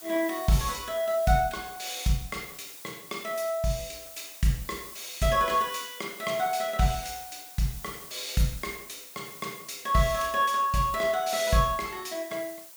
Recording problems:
background hiss; slope +1 dB per octave, SNR 15 dB

